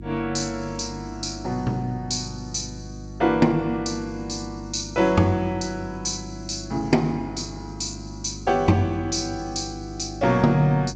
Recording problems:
codec artefacts; G.722, log-spectral distance 6 dB, nothing above 7.1 kHz
electrical hum; 50 Hz, harmonics up to 350 Hz, SNR 13 dB

